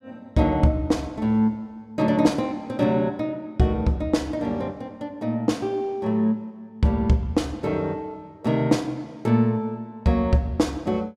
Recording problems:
none

